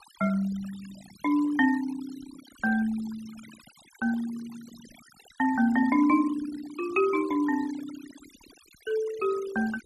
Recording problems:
noise reduction artefacts; signal-to-artefact ratio 19 dB

